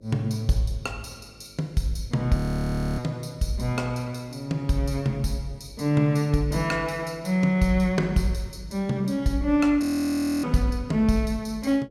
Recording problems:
mains hum; 50 Hz, harmonics up to 600 Hz, SNR 28 dB
audio freezing; at 2.5 s for 0.5 s and at 10 s for 0.5 s

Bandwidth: 16 kHz